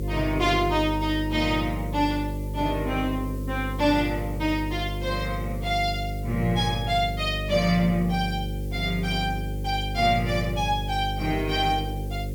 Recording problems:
hum; 50 Hz, harmonics up to 550 Hz, SNR 6 dB
hiss; SNR 23 dB

